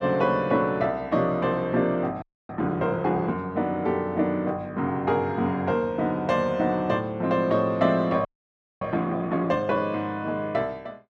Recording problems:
frozen audio; at 2 s and at 8.5 s for 0.5 s

